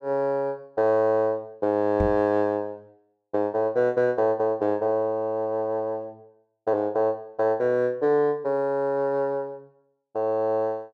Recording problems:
microphone thump; at 2 s; peak +1 dB vs average level

